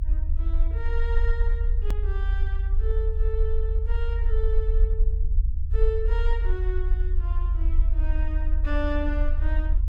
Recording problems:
low-frequency rumble; below 50 Hz, strongest tone 26 Hz, SNR -9 dB
hard cut with a click; at 2 s

